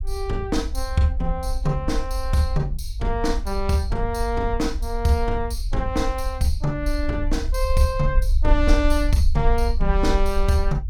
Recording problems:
low-frequency rumble; below 52 Hz, SNR 2 dB

